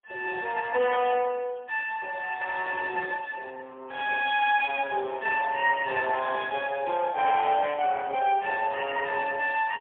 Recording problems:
phone line; 300 Hz to 3.3 kHz, AMR-NB, then MP3

